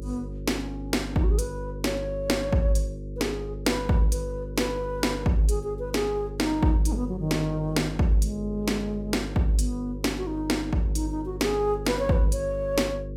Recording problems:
hum; 50 Hz, harmonics up to 550 Hz, SNR 10 dB

